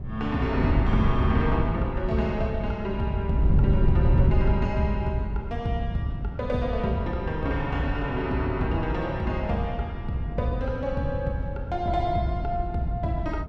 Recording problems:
wind noise; below 140 Hz, SNR 2 dB

